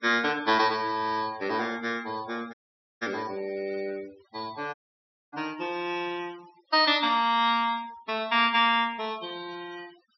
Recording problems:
low-pass filter; nothing above 5.7 kHz
noise reduction artefacts; signal-to-artefact ratio 22 dB
dropout; at 2.5 s and at 4.5 s for 0.5 s

